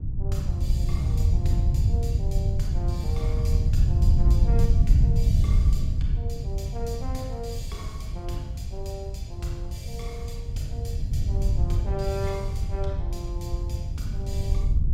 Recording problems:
wind noise; below 96 Hz, SNR -11 dB

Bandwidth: 16 kHz